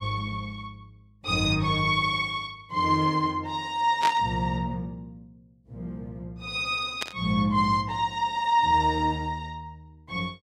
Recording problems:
burst of static; at 4 s and at 7 s; peak 0 dB vs average level

